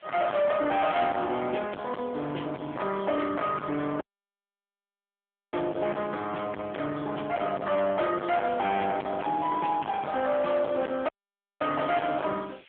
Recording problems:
phone line; 240 Hz to 3.3 kHz, AMR-NB
distorted audio; hard clipping, signal-to-distortion ratio 6 dB
hiss; SNR 27 dB
dropout; at 4 s for 1.5 s and at 11 s for 0.5 s

